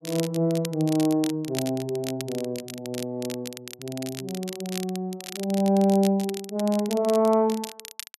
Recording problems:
crackling; vinyl, SNR 13 dB

